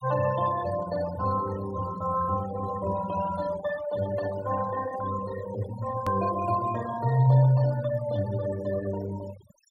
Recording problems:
noise reduction artefacts; signal-to-artefact ratio 14 dB
click at an edit; at 6 s

